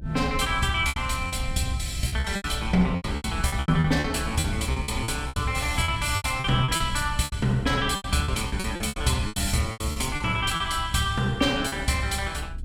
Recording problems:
rumble; below 98 Hz, SNR 9 dB
packet loss; 15% of the sound replaced, filled with repeated pitch periods

